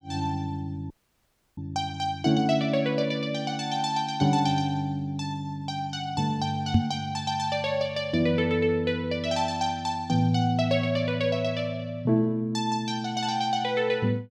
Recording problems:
dropout; at 1 s for 0.5 s
knock on the microphone; at 6.5 s; peak +8 dB vs average level

